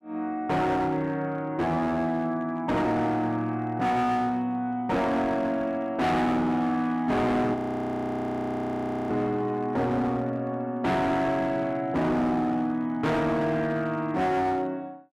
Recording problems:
distortion; hard clipping, signal-to-distortion ratio 8 dB
audio freezing; at 7.5 s for 1.5 s

